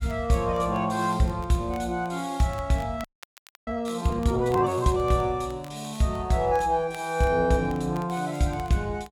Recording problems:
crackle; vinyl, SNR 27 dB
frozen audio; at 3 s for 0.5 s

